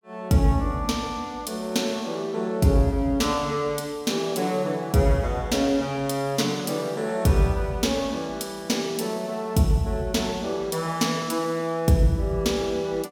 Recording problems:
none

